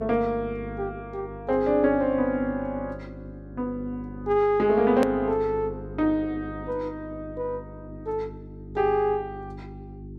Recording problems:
hum; 50 Hz, harmonics up to 400 Hz, SNR 14 dB
click at an edit; at 5 s

